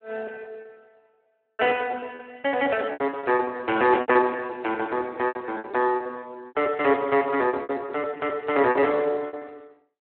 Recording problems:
phone line; 240 Hz to 3.2 kHz, Speex
lost packets; 17% of the sound replaced, filled with repeated pitch periods

